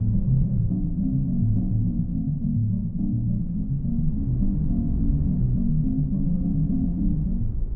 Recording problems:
rumble; below 76 Hz, SNR 8 dB

